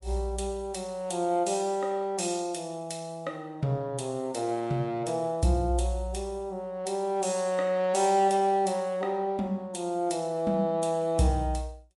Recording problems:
codec artefacts; MP3, log-spectral distance 2 dB, nothing above 11 kHz

